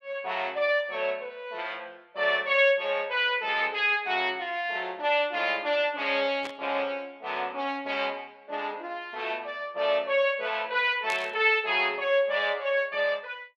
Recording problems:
burst of static; at 6.5 s and at 11 s; peak -6 dB vs average level

